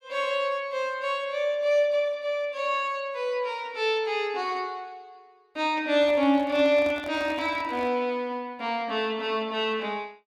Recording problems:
handling noise; from 6 to 8 s; peak -10 dB vs average level

